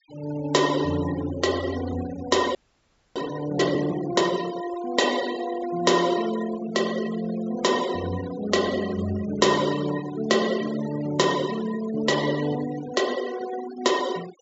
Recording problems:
low-pass filter; nothing above 8 kHz
denoising artefacts; signal-to-artefact ratio 13 dB
audio freezing; at 2.5 s for 0.5 s

